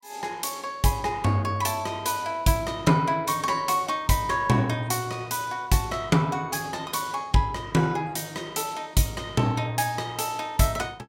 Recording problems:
none

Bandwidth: 16.5 kHz